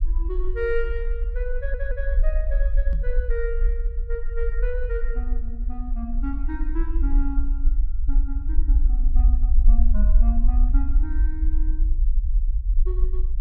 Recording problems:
low-frequency rumble; below 46 Hz, SNR -9 dB
audio stuttering; at 1.5 s
microphone bump; at 3 s; peak +3 dB vs average level

